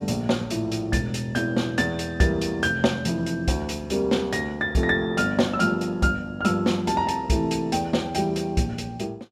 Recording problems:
none

